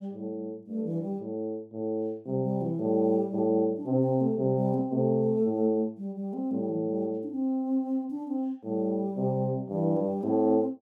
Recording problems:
none

